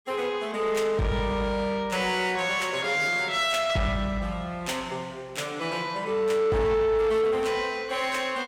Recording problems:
distortion; soft clipping, signal-to-distortion ratio 10 dB

